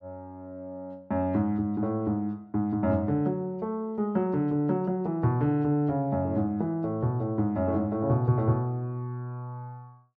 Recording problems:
none

